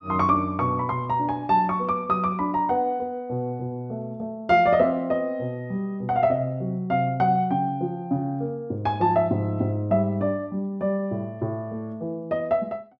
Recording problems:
none

